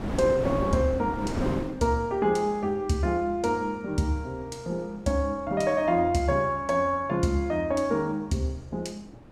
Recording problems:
wind noise; below 480 Hz, SNR 6 dB

